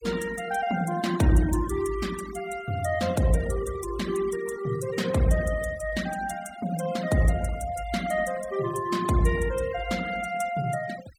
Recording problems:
noise reduction artefacts; signal-to-artefact ratio 16 dB

